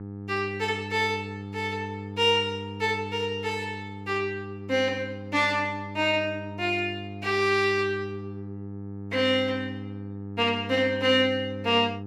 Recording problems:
mains hum; 50 Hz, harmonics up to 900 Hz, SNR 12 dB

